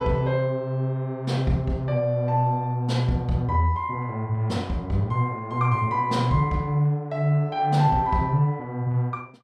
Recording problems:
none

